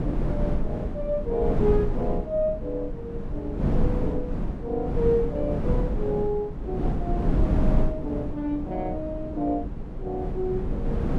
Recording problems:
wind noise; below 210 Hz, SNR 0 dB

